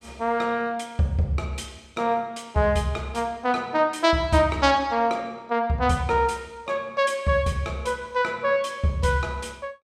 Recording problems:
none

